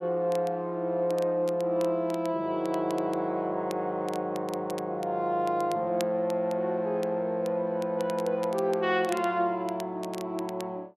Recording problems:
crackle; vinyl, SNR 20 dB

